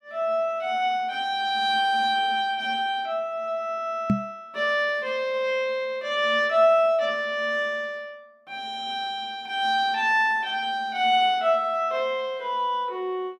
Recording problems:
microphone thump; at 4 s; peak +6 dB vs average level

